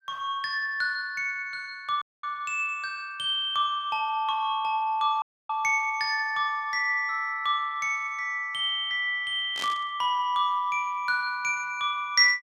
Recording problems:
audio cutting out; at 2 s and at 5 s
static burst; at 9.5 s; peak -4 dB vs average level

